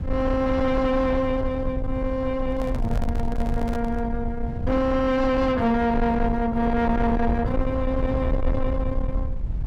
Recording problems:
distortion; soft clipping, signal-to-distortion ratio 10 dB
rumble; below 98 Hz, SNR 5 dB
handling noise; from 2.5 to 4 s; peak -5 dB vs average level

